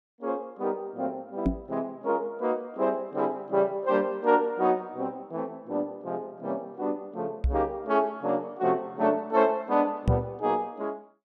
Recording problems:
knock on the microphone; at 1.5 s, at 7.5 s and at 10 s; peak +8 dB vs average level

